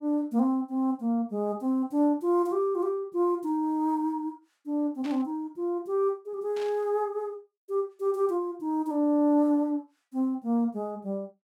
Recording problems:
static burst; at 5 s and at 6.5 s; peak -12 dB vs average level

